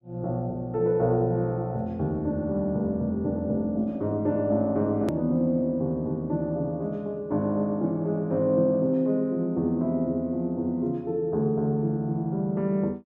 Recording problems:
edit click; at 5 s

